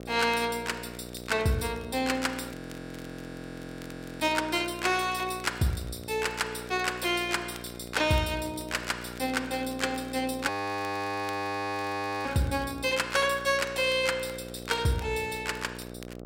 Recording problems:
hum; 60 Hz, harmonics up to 1.3 kHz, SNR 13 dB
crackling; vinyl, SNR 23 dB
audio freezing; at 2.5 s for 1.5 s and at 10 s for 2 s

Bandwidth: 16 kHz